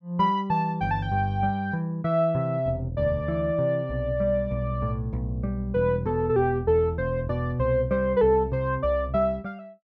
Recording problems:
none

